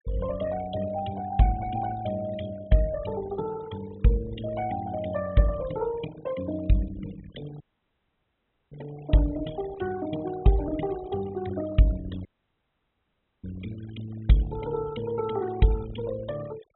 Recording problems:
treble cut off; nothing above 3.9 kHz
denoising artefacts; signal-to-artefact ratio 16 dB
dropout; at 7.5 s for 1 s and at 12 s for 1 s

